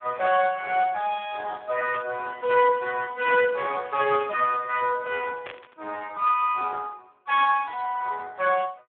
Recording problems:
telephone audio; 280 Hz to 3.7 kHz, Speex
static burst; at 2 s, at 4 s and at 5.5 s; peak -6 dB vs average level

